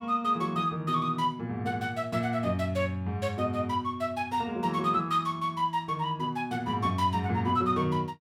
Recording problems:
none

